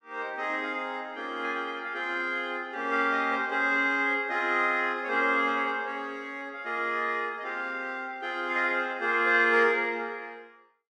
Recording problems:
none

